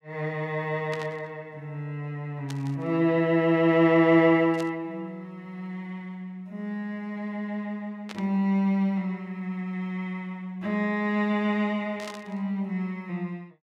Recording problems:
static burst; 5 times, first at 1 s; peak -8 dB vs average level

